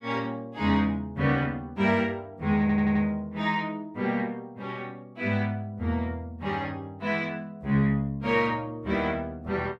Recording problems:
audio stuttering; at 2.5 s

